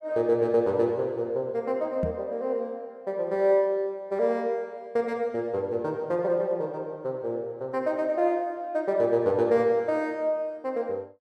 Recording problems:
microphone bump; at 2 s; peak +1 dB vs average level

